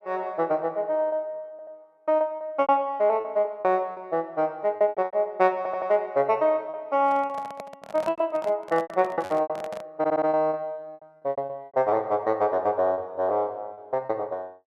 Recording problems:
packet loss; 11% of the sound replaced, filled with repeated pitch periods
audio stuttering; at 1.5 s, at 5.5 s and at 10 s
microphone handling noise; from 7 to 10 s; peak -7 dB vs average level

